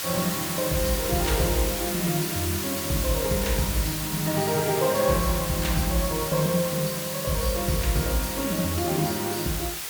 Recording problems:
background hiss; slope +1 dB per octave, SNR 3 dB

